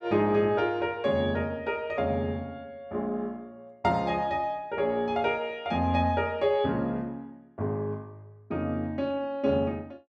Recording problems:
none

